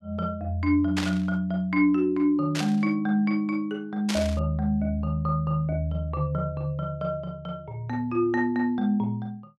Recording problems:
static burst; at 1 s, at 2.5 s and at 4 s; peak 0 dB vs average level

